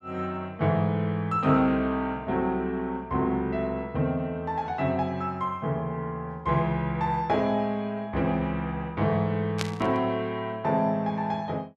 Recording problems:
burst of static; at 9.5 s; peak +1 dB vs average level

